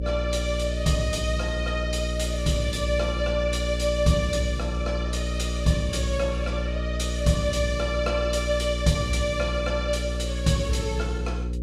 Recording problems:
electrical hum; 60 Hz, harmonics up to 540 Hz, SNR 3 dB

